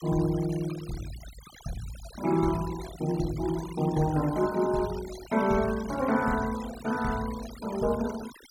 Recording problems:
noise reduction artefacts; signal-to-artefact ratio 15 dB

